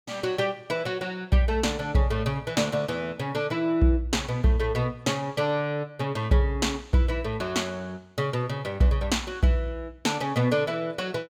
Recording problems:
none

